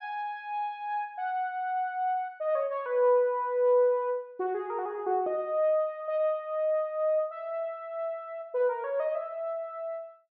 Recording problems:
treble missing; nothing above 6.5 kHz

